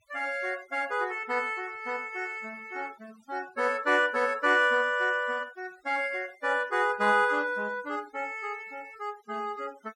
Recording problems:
noise reduction artefacts; signal-to-artefact ratio 25 dB

